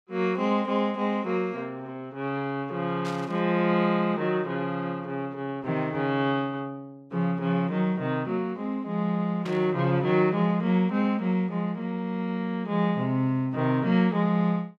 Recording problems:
static burst; at 3 s and at 9.5 s; peak -9 dB vs average level

